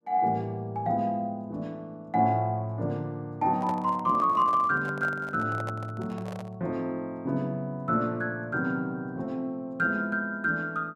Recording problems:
microphone handling noise; from 3.5 to 6.5 s; peak -6 dB vs average level

